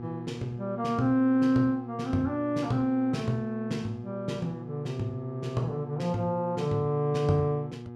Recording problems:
hum; 60 Hz, harmonics up to 1.2 kHz, SNR 11 dB

